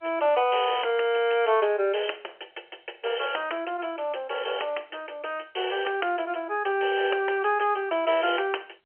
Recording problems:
phone line; 320 Hz to 3.1 kHz, G.711

